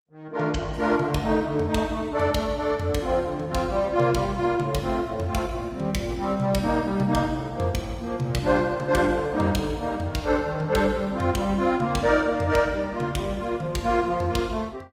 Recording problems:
codec artefacts; Opus, log-spectral distance 3 dB, nothing above 19 kHz

